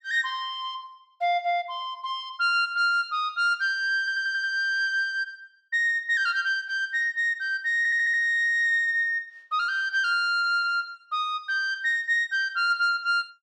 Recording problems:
audio stuttering; at 4 s and at 8 s

